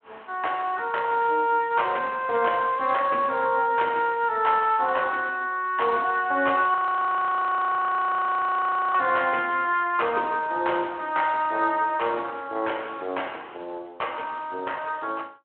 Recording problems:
telephone audio; 260 Hz to 3.3 kHz, Speex
audio freezing; at 7 s for 2 s

